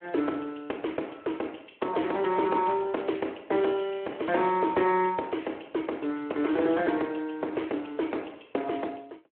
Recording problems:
phone line; 240 Hz to 3.2 kHz, Speex

